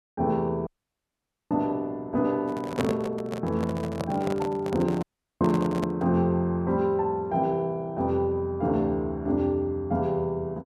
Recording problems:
audio cutting out; at 0.5 s for 1 s and at 5 s
microphone handling noise; from 2.5 to 6 s; peak +1 dB vs average level

